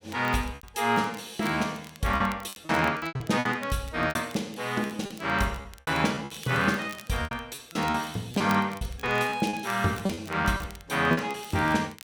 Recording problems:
crackle; vinyl, SNR 21 dB
packet loss; 12% of the sound replaced, filled with repeated pitch periods

